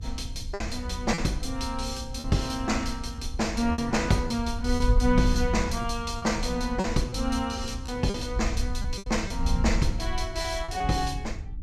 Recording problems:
electrical hum; 60 Hz, harmonics up to 300 Hz, SNR 17 dB
wind on the microphone; below 68 Hz, SNR 5 dB
lost packets; 6% of the sound replaced, filled with repeated pitch periods

